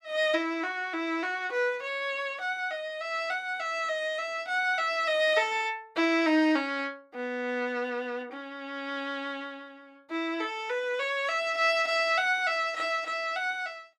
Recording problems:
none

